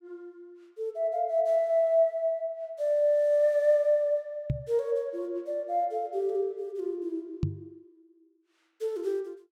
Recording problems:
knock on the microphone; at 4.5 s and at 7.5 s; peak +3 dB vs average level

